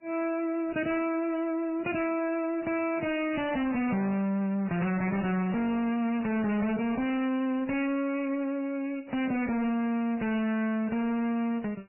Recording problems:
lossy compression; MP3, then AAC, log-spectral distance 3 dB, nothing above 2.7 kHz
distorted audio; soft clipping, signal-to-distortion ratio 7 dB

